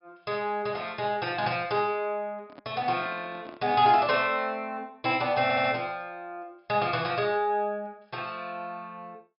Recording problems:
low-pass filter; nothing above 5.5 kHz
microphone handling noise; from 2.5 to 4 s; peak -12 dB vs average level
audio stuttering; at 5.5 s

